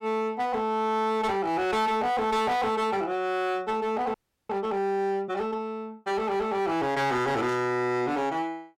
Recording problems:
distorted audio; hard clipping, uneven, signal-to-distortion ratio 11 dB
frozen audio; at 4 s
static burst; at 7.5 s; peak -15 dB vs average level

